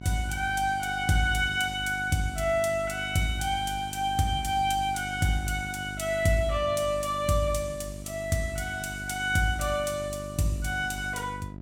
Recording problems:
hum; 50 Hz, harmonics up to 700 Hz, SNR 13 dB

